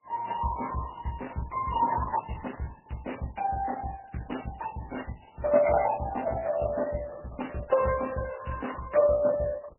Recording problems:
lossy compression; Opus, then MP3, log-spectral distance 5 dB, nothing above 2.9 kHz

